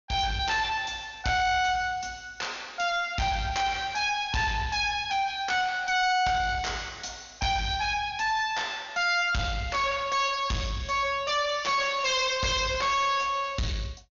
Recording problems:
treble missing; nothing above 6.7 kHz
distorted audio; soft clipping, signal-to-distortion ratio 5 dB

